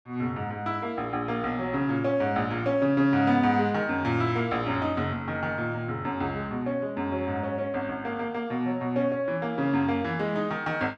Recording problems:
none

